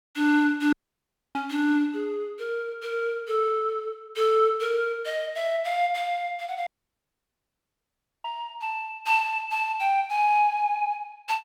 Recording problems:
audio cutting out; at 0.5 s for 0.5 s and at 6.5 s for 1.5 s

